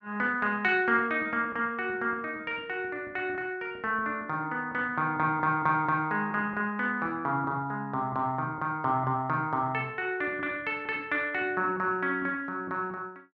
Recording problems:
none

